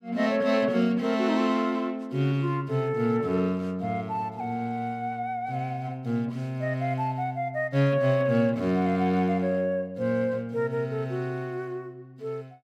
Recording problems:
none

